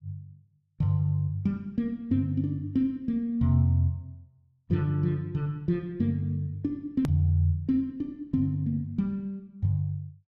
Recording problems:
hard cut with a click; at 7 s

